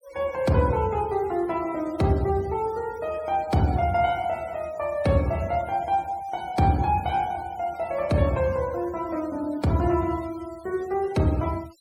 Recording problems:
noise reduction artefacts; signal-to-artefact ratio 23 dB

